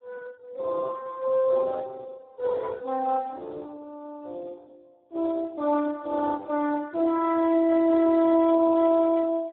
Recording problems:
telephone audio; 280 Hz to 2 kHz, Speex

